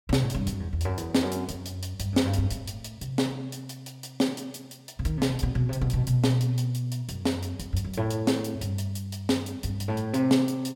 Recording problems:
none

